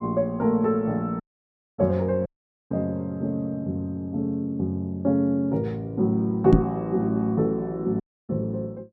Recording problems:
dropout; at 1 s for 0.5 s, at 2.5 s and at 8 s
microphone thump; at 6.5 s; peak +10 dB vs average level

